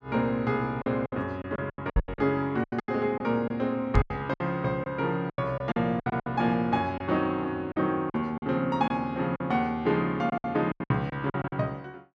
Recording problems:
packet loss; 13% of the sound replaced, filled with silence
microphone bump; at 2 s and at 4 s; peak +7 dB vs average level

